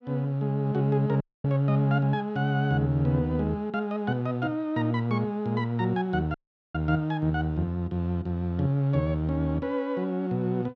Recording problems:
audio cutting out; at 1 s and at 6.5 s

